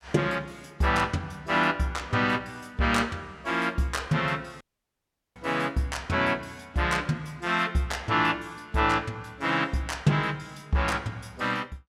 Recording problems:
audio cutting out; at 4.5 s for 1 s

